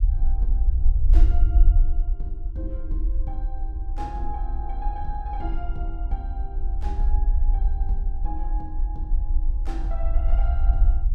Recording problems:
rumble; below 52 Hz, SNR -13 dB

